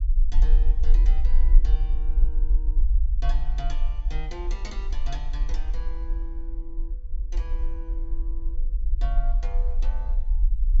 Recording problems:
low-pass filter; nothing above 8 kHz
low-frequency rumble; below 42 Hz, SNR -16 dB

